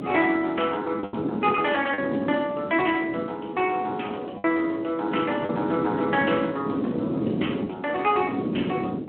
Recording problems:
phone line; 220 Hz to 3.3 kHz, Speex
wind noise; below 390 Hz, SNR 5 dB
packet loss; 3% of the sound replaced, filled with the last packet

